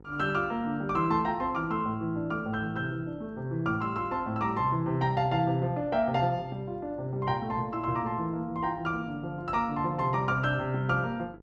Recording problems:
mains hum; 50 Hz, harmonics up to 1 kHz, SNR 22 dB

